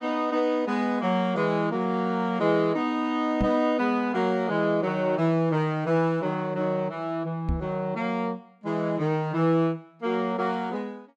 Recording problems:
microphone thump; at 3.5 s and at 7.5 s; peak +2 dB vs average level

